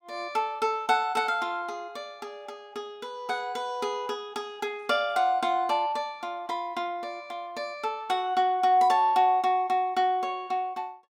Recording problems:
none

